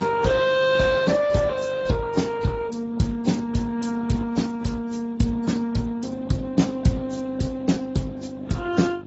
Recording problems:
lossy compression; Speex, then AAC, log-spectral distance 4 dB, nothing above 7.6 kHz
hum; 50 Hz, harmonics up to 900 Hz, SNR 18 dB

